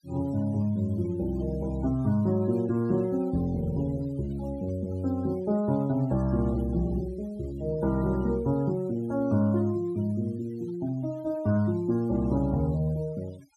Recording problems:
denoising artefacts; signal-to-artefact ratio 23 dB

